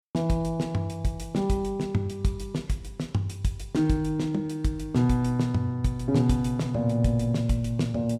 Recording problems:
none

